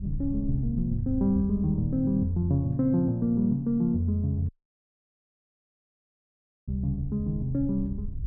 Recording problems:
low-frequency rumble; below 80 Hz, SNR 13 dB
dropout; at 4.5 s for 2 s

